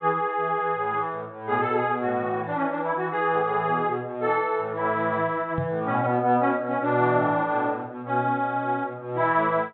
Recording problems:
treble cut off; nothing above 4 kHz
microphone bump; at 5.5 s; peak -2 dB vs average level

